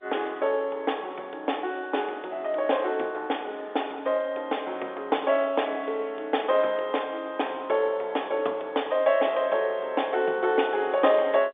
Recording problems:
telephone audio; 320 Hz to 3.6 kHz, G.711

